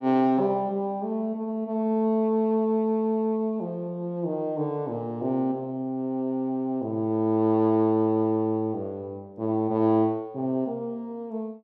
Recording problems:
none

